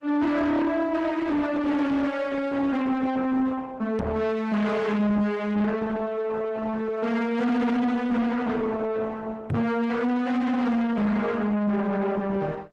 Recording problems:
lossy compression; Opus, log-spectral distance 3 dB
distortion; soft clipping, signal-to-distortion ratio 7 dB
microphone bump; at 4 s and at 9.5 s; peak +3 dB vs average level

